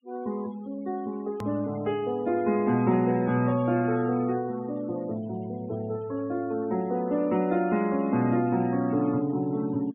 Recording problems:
low-pass filter; nothing above 3.6 kHz
noise reduction artefacts; signal-to-artefact ratio 22 dB
edit click; at 1.5 s

